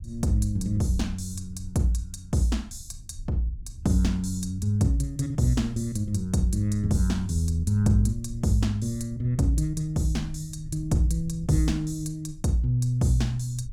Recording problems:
rumble; below 86 Hz, SNR 16 dB

